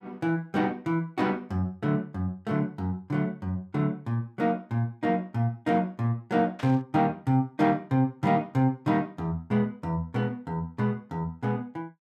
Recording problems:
static burst; at 6.5 s; peak -9 dB vs average level

